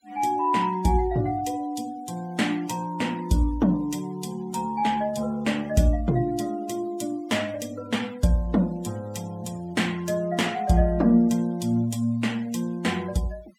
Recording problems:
noise reduction artefacts; signal-to-artefact ratio 22 dB

